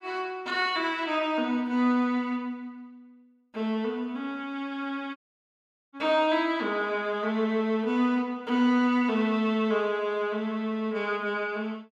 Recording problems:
dropout; at 5 s for 1 s

